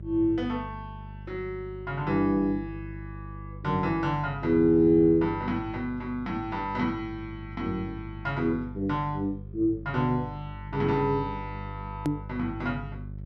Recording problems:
hum; 50 Hz, harmonics up to 400 Hz, SNR 13 dB
click at an edit; at 12 s

